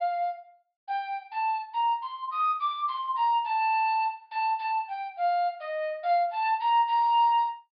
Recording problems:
low-pass filter; nothing above 5 kHz

